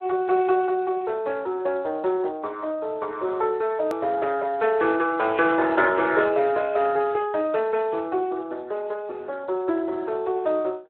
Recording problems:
telephone audio; 280 Hz to 3 kHz, Speex
hard cut with a click; at 4 s

